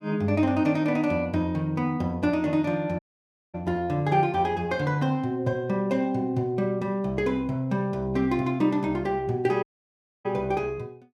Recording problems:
audio cutting out; at 3 s for 0.5 s and at 9.5 s for 0.5 s

